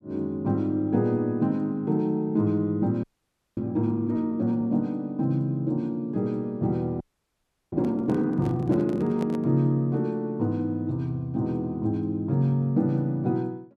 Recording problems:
audio freezing; at 3 s for 0.5 s and at 7 s for 0.5 s
handling noise; from 8 to 9.5 s; peak -7 dB vs average level

